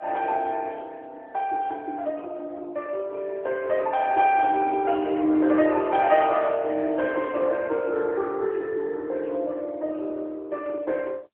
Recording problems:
telephone audio; 320 Hz to 3.6 kHz, AMR-NB

